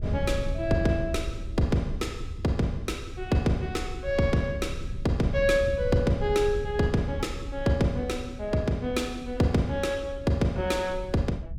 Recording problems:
wind noise; below 88 Hz, SNR 10 dB

